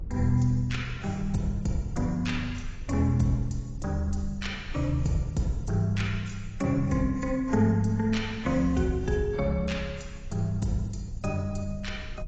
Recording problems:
lossy compression; AAC, log-spectral distance 2 dB, nothing above 7.6 kHz
low-frequency rumble; below 68 Hz, strongest tone 24 Hz, SNR 14 dB

